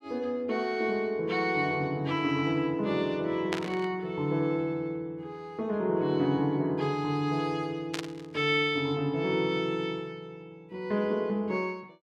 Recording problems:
burst of static; at 3.5 s and at 8 s; peak +1 dB vs average level

